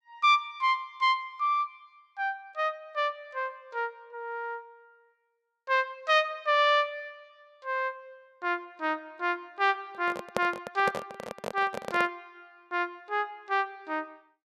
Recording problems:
microphone handling noise; from 10 to 12 s; peak +3 dB vs average level

